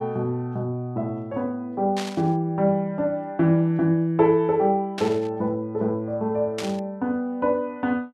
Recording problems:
static burst; at 2 s, at 5 s and at 6.5 s; peak -4 dB vs average level

